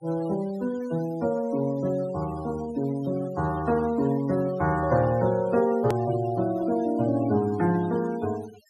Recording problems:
noise reduction artefacts; signal-to-artefact ratio 19 dB
edit click; at 6 s

